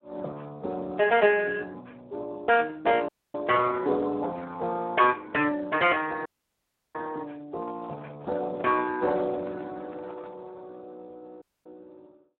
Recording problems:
phone line; 260 Hz to 3 kHz, Speex
audio cutting out; at 3 s, at 6.5 s for 0.5 s and at 11 s
handling noise; from 7.5 to 10 s; peak -13 dB vs average level

